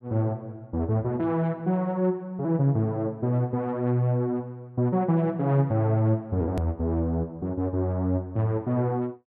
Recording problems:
edit click; at 6.5 s

